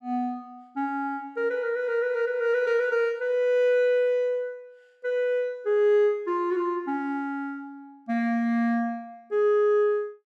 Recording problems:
none

